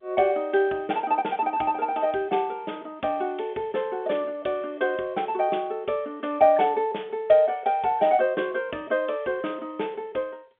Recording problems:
telephone audio; 240 Hz to 3.5 kHz, G.711

